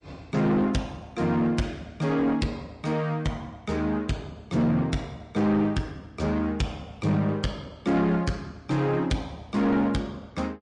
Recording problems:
codec artefacts; MP3, log-spectral distance 2 dB, nothing above 9 kHz
distorted audio; soft clipping, signal-to-distortion ratio 11 dB

